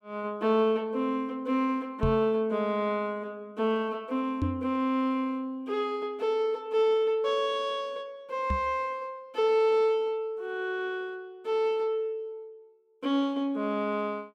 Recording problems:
knock on the microphone; at 2 s, at 4.5 s and at 8.5 s; peak +3 dB vs average level

